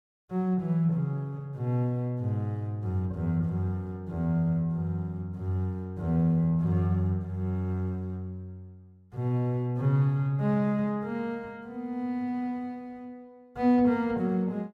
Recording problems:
none

